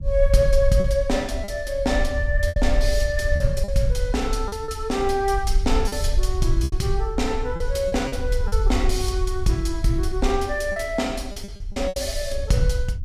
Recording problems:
low-frequency rumble; below 58 Hz, SNR 3 dB
packet loss; 6% of the sound replaced, filled with repeated pitch periods

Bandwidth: 14.5 kHz